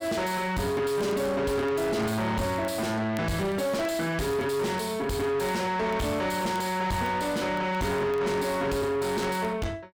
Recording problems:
distortion; soft clipping, signal-to-distortion ratio 7 dB
crackling; vinyl, SNR 27 dB

